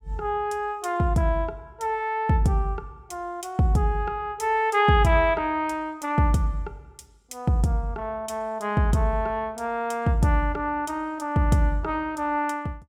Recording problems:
none

